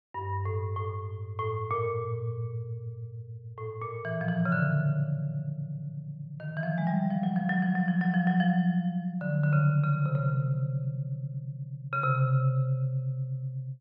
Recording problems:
none

